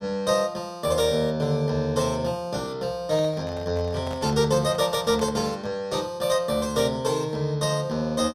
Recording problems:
handling noise; from 3 to 5.5 s; peak -8 dB vs average level

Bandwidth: 15 kHz